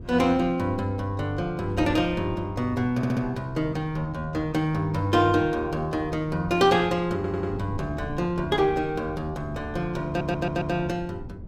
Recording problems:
wind on the microphone; below 200 Hz, SNR 15 dB
audio stuttering; at 3 s, at 7 s and at 10 s

